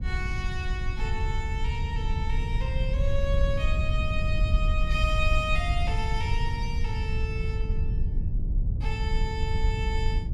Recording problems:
rumble; below 84 Hz, SNR -4 dB

